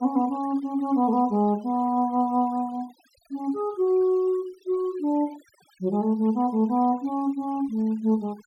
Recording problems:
denoising artefacts; signal-to-artefact ratio 28 dB

